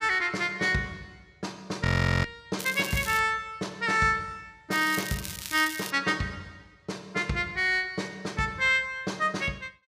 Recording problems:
audio freezing; at 2 s
crackling; at 2.5 s and from 4.5 to 6 s; loose cable, SNR 10 dB

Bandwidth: 15 kHz